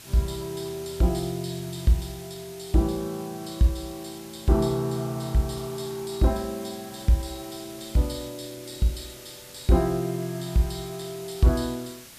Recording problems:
background hiss; SNR 17 dB

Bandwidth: 14.5 kHz